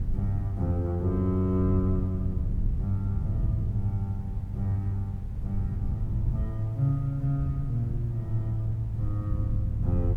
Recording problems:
background hiss; SNR 28 dB
wind noise; below 120 Hz, SNR 4 dB

